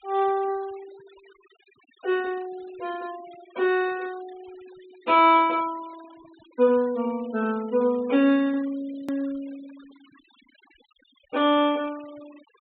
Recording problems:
treble cut off; nothing above 4 kHz
denoising artefacts; signal-to-artefact ratio 25 dB
hard cut with a click; at 9 s

